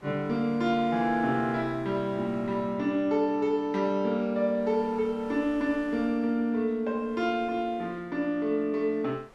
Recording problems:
wind on the microphone; below 1.4 kHz, SNR 26 dB

